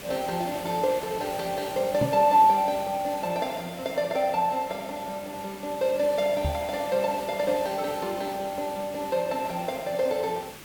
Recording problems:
hiss; SNR 14 dB
knock on the microphone; at 2 s and at 6.5 s; peak +2 dB vs average level

